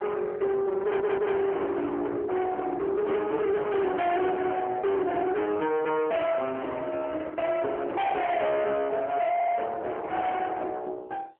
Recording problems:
phone line; 320 Hz to 3.2 kHz, AMR-NB
distorted audio; soft clipping, signal-to-distortion ratio 7 dB
audio stuttering; at 1 s and at 9.5 s
microphone handling noise; from 6 to 9 s; peak -11 dB vs average level

